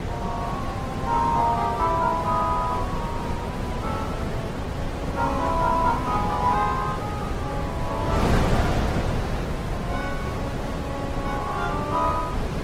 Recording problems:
lossy codec; Opus, log-spectral distance 3 dB
wind on the microphone; below 660 Hz, SNR 2 dB

